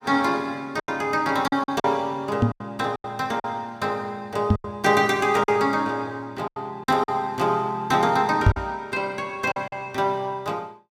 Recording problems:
packet loss; 7% of the sound replaced, filled with silence
microphone bump; at 2.5 s, at 4.5 s and at 8.5 s; peak +10 dB vs average level

